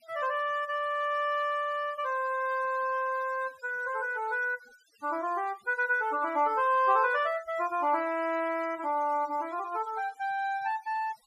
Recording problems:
denoising artefacts; signal-to-artefact ratio 23 dB

